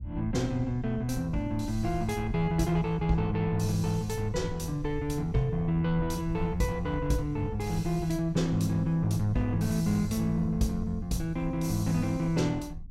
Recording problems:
low-frequency rumble; below 90 Hz, SNR 12 dB

